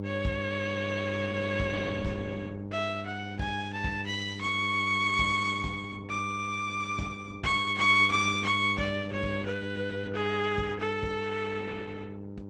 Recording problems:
lossy codec; Opus, log-spectral distance 4 dB
hum; 50 Hz, harmonics up to 900 Hz, SNR 9 dB

